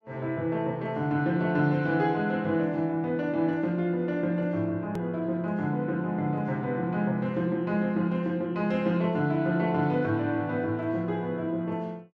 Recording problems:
hard cut with a click; at 5 s

